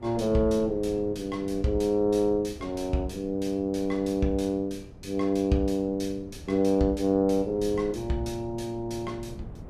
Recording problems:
wind on the microphone; below 250 Hz, SNR 18 dB

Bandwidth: 14.5 kHz